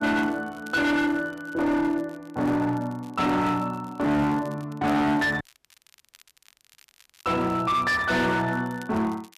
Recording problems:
distortion; hard clipping, signal-to-distortion ratio 8 dB
crackling; vinyl, SNR 28 dB
audio cutting out; at 5.5 s for 2 s

